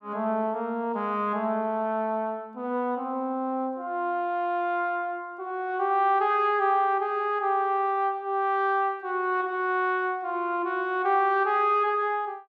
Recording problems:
none

